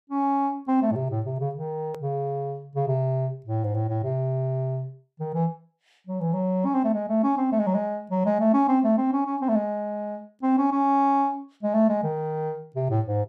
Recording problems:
hard cut with a click; at 2 s

